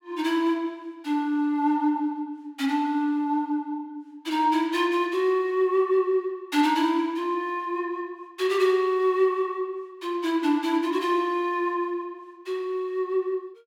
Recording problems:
none

